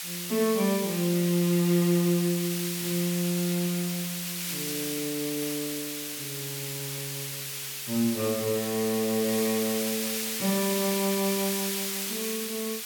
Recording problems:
background hiss; slope +4 dB per octave, SNR 3 dB

